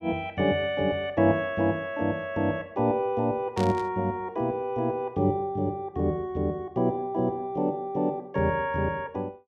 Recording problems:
static burst; at 3.5 s; peak -7 dB vs average level

